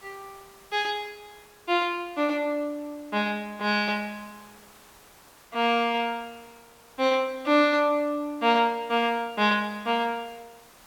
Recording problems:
background hiss; SNR 27 dB

